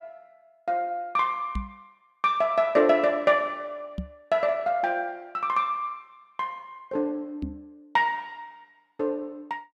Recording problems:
knock on the microphone; at 1.5 s, at 4 s and at 7.5 s; peak -1 dB vs average level

